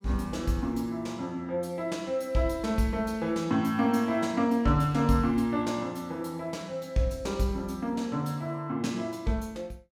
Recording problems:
none

